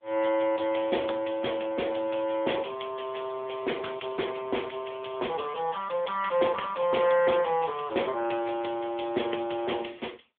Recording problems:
telephone audio; 280 Hz to 3.5 kHz, AMR-NB

